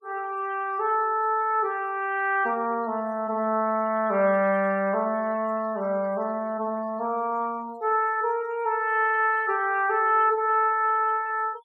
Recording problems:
denoising artefacts; signal-to-artefact ratio 27 dB

